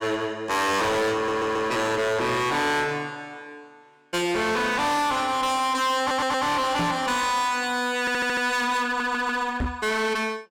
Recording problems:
distortion; hard clipping, uneven, signal-to-distortion ratio 7 dB
stutter; 4 times, first at 1 s
knock on the microphone; at 7 s and at 9.5 s; peak +1 dB vs average level

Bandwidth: 17 kHz